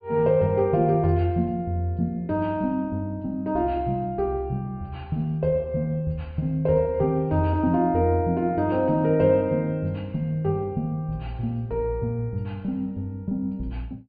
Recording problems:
low-pass filter; nothing above 4.7 kHz

